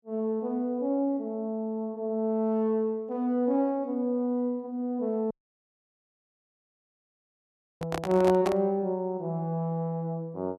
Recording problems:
audio cutting out; at 5.5 s for 2.5 s
microphone handling noise; at 8 s; peak +1 dB vs average level

